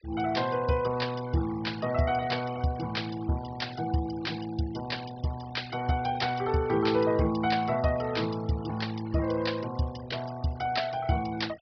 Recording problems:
low-pass filter; nothing above 5.5 kHz
denoising artefacts; signal-to-artefact ratio 17 dB

